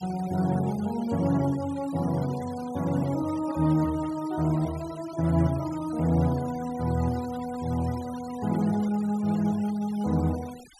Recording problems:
denoising artefacts; signal-to-artefact ratio 20 dB

